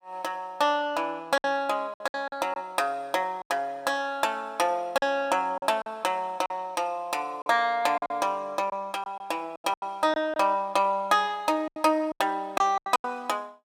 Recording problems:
packet loss; 9% of the sound replaced, filled with silence

